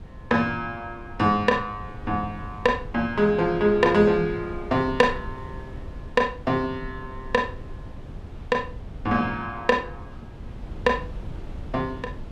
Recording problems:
wind noise; below 160 Hz, SNR 15 dB

